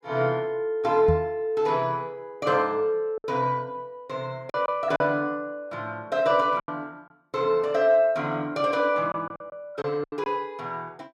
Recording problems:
lost packets; 4% of the sound replaced, filled with silence
microphone thump; at 1 s; peak +4 dB vs average level

